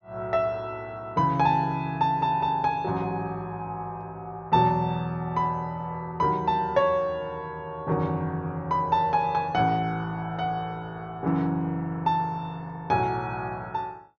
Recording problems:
treble missing; nothing above 6.6 kHz

